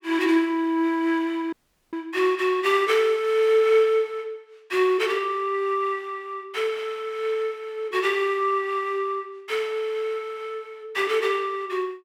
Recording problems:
audio cutting out; at 1.5 s

